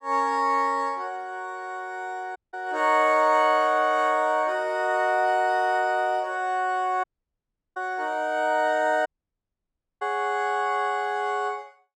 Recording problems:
audio cutting out; at 2.5 s, at 7 s for 0.5 s and at 9 s for 1 s

